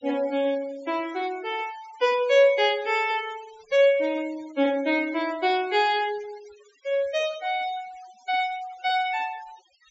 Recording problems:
low-pass filter; nothing above 8 kHz
noise reduction artefacts; signal-to-artefact ratio 22 dB

